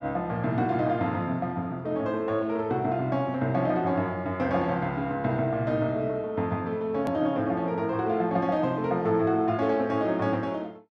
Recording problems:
click at an edit; at 7 s

